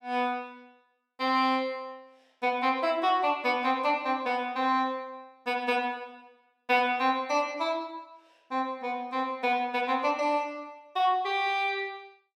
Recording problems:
none

